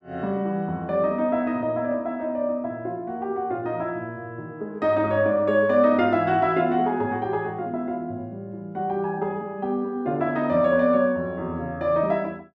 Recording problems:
none

